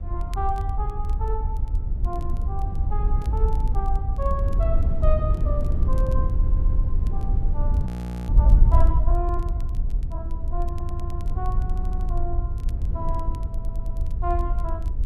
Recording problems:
low-frequency rumble; below 78 Hz, SNR -4 dB
wind noise; below 64 Hz, SNR -7 dB
crackling; vinyl, SNR 24 dB
stutter; 4 times, first at 6.5 s
audio freezing; at 8 s

